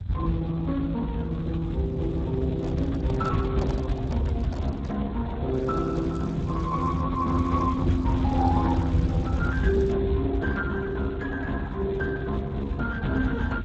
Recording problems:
lossy codec; Speex, log-spectral distance 2 dB
rumble; below 120 Hz, SNR 4 dB
microphone handling noise; from 2.5 to 5 s; peak -3 dB vs average level
crackle; from 5.5 to 7 s and from 7 to 10 s; loose cable, SNR 28 dB

